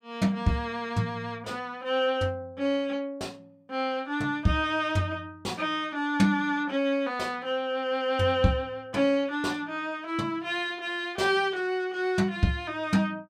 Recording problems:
none

